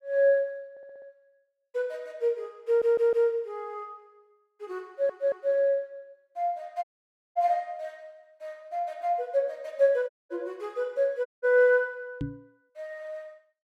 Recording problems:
stutter; at 0.5 s, at 2.5 s and at 5 s
audio cutting out; at 7 s for 0.5 s, at 10 s and at 11 s
knock on the microphone; at 12 s; peak -2 dB vs average level

